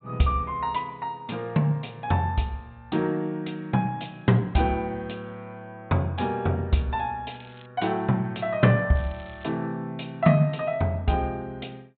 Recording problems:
treble cut off; nothing above 4 kHz
crackling; at 7.5 s and at 9 s; loose cable, SNR 27 dB

